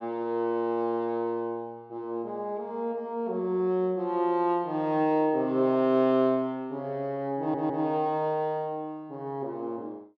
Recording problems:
stutter; at 7.5 s

